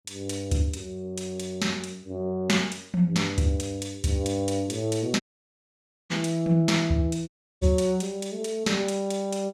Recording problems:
dropout; at 5 s for 1 s and at 7.5 s

